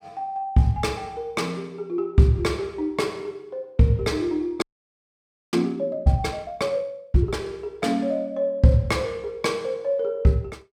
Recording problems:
audio freezing; at 4.5 s for 1 s

